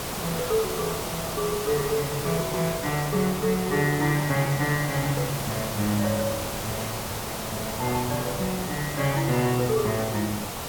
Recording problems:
hiss; slope -4 dB per octave, SNR 4 dB

